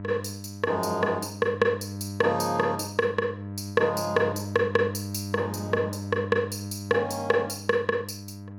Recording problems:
hum; 50 Hz, harmonics up to 1 kHz, SNR 10 dB

